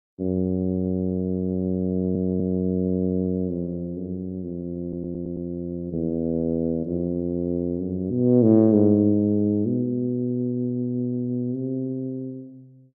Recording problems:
audio stuttering; at 2 s and at 5 s

